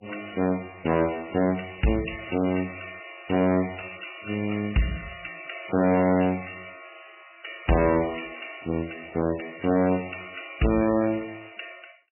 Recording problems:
lossy compression; MP3, log-spectral distance 13 dB, nothing above 2.8 kHz
distortion; soft clipping, signal-to-distortion ratio 7 dB

